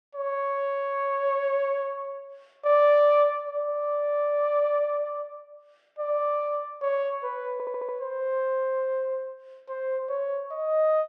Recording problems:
stutter; at 7.5 s

